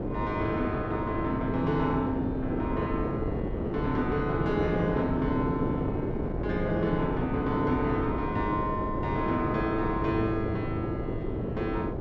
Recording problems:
wind noise; below 430 Hz, SNR 1 dB

